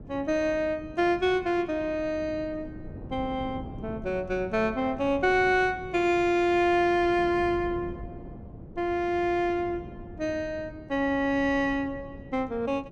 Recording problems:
wind on the microphone; below 280 Hz, SNR 16 dB

